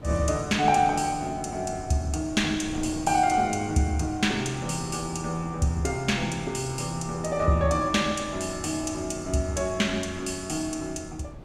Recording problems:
wind on the microphone; below 320 Hz, SNR 16 dB

